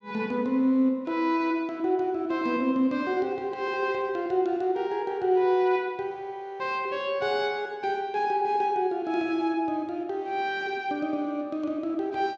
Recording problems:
none

